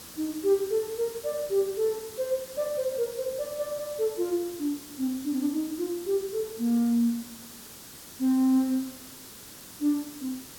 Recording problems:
hiss; SNR 14 dB

